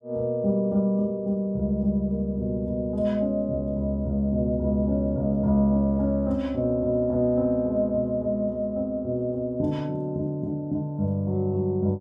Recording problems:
none

